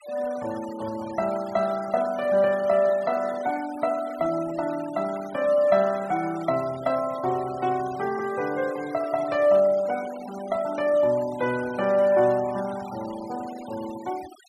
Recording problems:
noise reduction artefacts; signal-to-artefact ratio 18 dB

